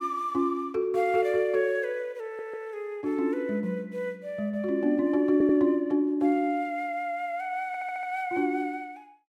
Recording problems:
stutter; at 2.5 s, at 5.5 s and at 7.5 s

